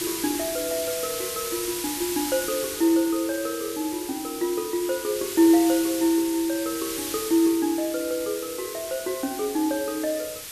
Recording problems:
hiss; slope +2 dB per octave, SNR 6 dB

